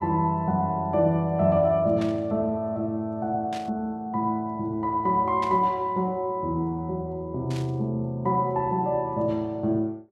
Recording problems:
burst of static; 4 times, first at 2 s; peak -9 dB vs average level

